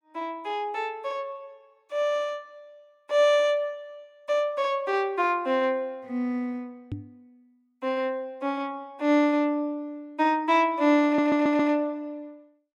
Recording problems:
microphone thump; at 7 s; peak -4 dB vs average level
stutter; at 11 s

